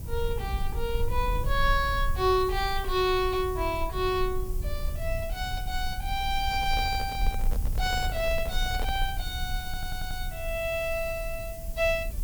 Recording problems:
hiss; SNR 15 dB
low-frequency rumble; below 60 Hz, SNR 5 dB
microphone handling noise; from 6.5 to 9 s; peak -5 dB vs average level
audio stuttering; at 9.5 s

